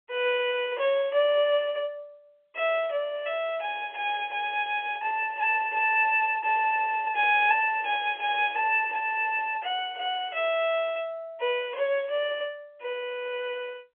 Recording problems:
telephone audio; 300 Hz to 3.3 kHz, G.711

